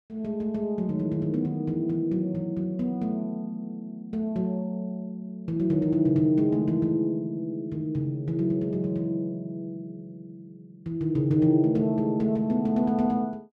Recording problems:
none

